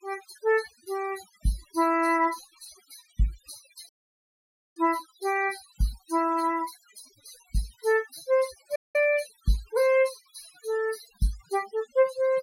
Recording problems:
noise reduction artefacts; signal-to-artefact ratio 17 dB
dropout; at 4 s for 1 s and at 9 s

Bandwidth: 16.5 kHz